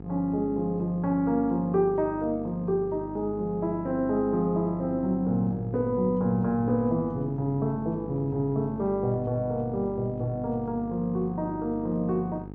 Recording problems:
electrical hum; 50 Hz, harmonics up to 950 Hz, SNR 13 dB

